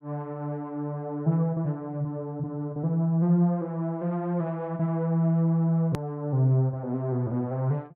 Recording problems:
hard cut with a click; at 6 s

